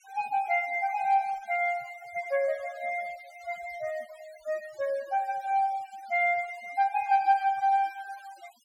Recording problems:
noise reduction artefacts; signal-to-artefact ratio 24 dB

